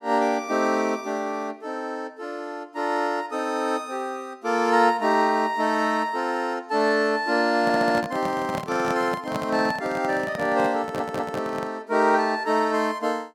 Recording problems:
microphone handling noise; from 7.5 to 12 s; peak -2 dB vs average level
stutter; at 7.5 s and at 11 s

